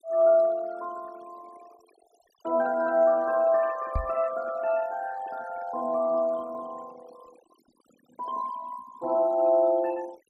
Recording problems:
denoising artefacts; signal-to-artefact ratio 23 dB
microphone bump; at 4 s; peak 0 dB vs average level

